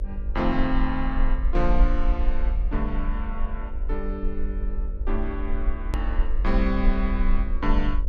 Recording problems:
electrical hum; 50 Hz, harmonics up to 600 Hz, SNR 16 dB
low-frequency rumble; below 46 Hz, strongest tone 24 Hz, SNR -2 dB
edit click; at 6 s

